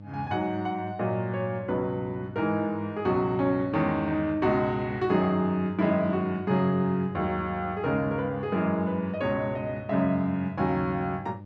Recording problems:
electrical hum; 50 Hz, harmonics up to 900 Hz, SNR 16 dB

